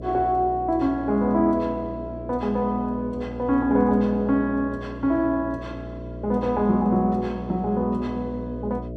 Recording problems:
mains hum; 60 Hz, harmonics up to 660 Hz, SNR 12 dB

